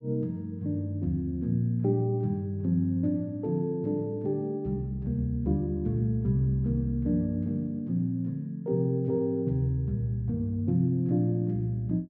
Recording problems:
none

